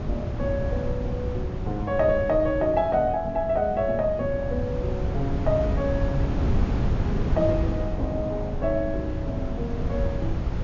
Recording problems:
low-pass filter; nothing above 7 kHz
hum; 60 Hz, harmonics up to 660 Hz, SNR 20 dB
wind on the microphone; below 160 Hz, SNR 2 dB

